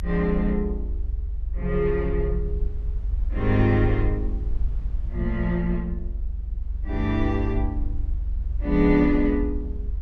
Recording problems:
rumble; below 68 Hz, strongest tone 48 Hz, SNR 5 dB

